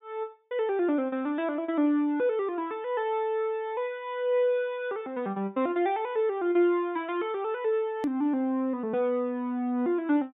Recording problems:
treble cut off; nothing above 4 kHz
hard cut with a click; at 8 s

